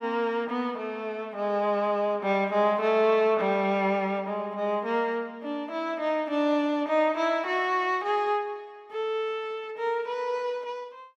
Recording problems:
none

